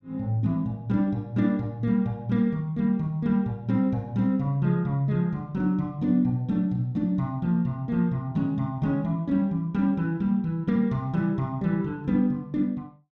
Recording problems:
none

